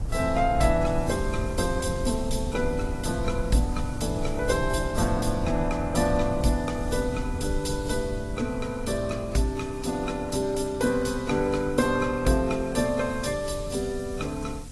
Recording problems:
lossy compression; AAC, log-spectral distance 4 dB, nothing above 11.6 kHz
background hiss; slope +3 dB per octave, SNR 21 dB
rumble; below 94 Hz, SNR 8 dB

